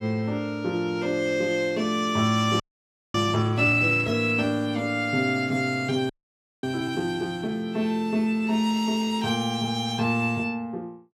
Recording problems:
frozen audio; at 2.5 s for 0.5 s and at 6 s for 0.5 s

